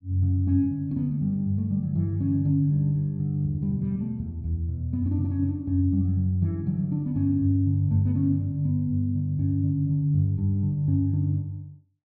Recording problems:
none

